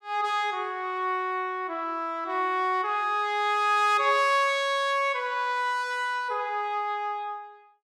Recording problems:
none

